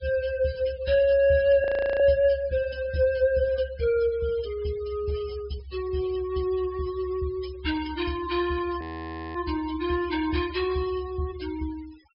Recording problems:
treble cut off; nothing above 5.5 kHz
denoising artefacts; signal-to-artefact ratio 19 dB
frozen audio; at 1.5 s and at 9 s for 0.5 s

